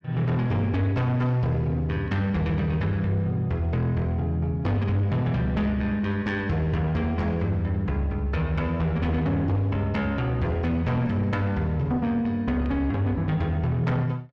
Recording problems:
distortion; soft clipping, signal-to-distortion ratio 11 dB

